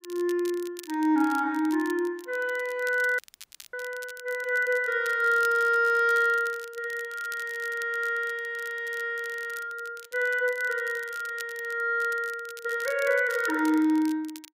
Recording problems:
crackling; vinyl, SNR 20 dB
dropout; at 3 s for 0.5 s

